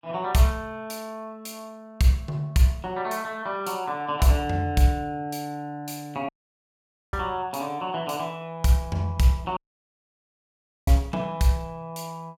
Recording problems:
dropout; at 6.5 s for 1 s and at 9.5 s for 1.5 s

